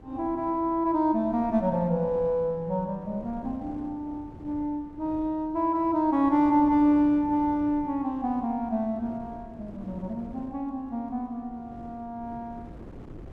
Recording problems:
wind noise; below 360 Hz, SNR 19 dB

